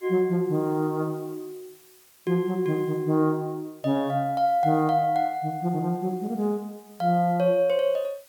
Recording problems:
background hiss; slope 0 dB per octave, SNR 28 dB

